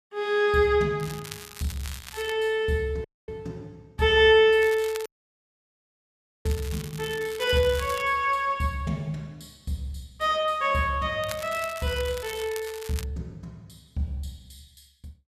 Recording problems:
crackling; from 1 to 2.5 s, from 4.5 to 8 s and from 11 to 13 s; loose cable, SNR 16 dB
audio cutting out; at 3 s and at 5 s for 1.5 s

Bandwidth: 14.5 kHz